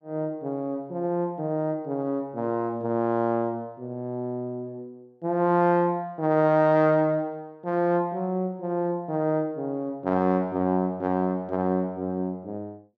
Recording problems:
none

